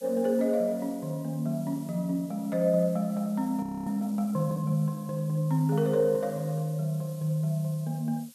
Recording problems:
background hiss; slope +4 dB per octave, SNR 23 dB
audio freezing; at 3.5 s

